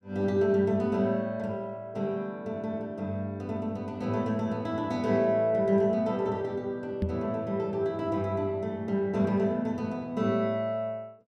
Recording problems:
microphone bump; at 7 s; peak +3 dB vs average level

